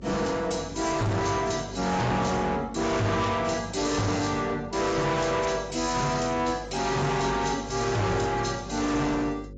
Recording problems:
lossy codec; AAC, log-spectral distance 7 dB, nothing above 7.6 kHz
distorted audio; hard clipping, signal-to-distortion ratio 6 dB
hum; 50 Hz, harmonics up to 550 Hz, SNR 18 dB

